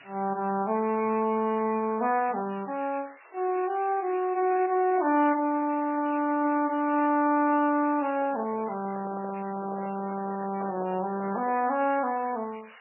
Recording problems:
lossy codec; MP3, then MP3, log-spectral distance 12 dB, nothing above 2.4 kHz
background hiss; SNR 23 dB
handling noise; from 8 to 12 s; peak -10 dB vs average level

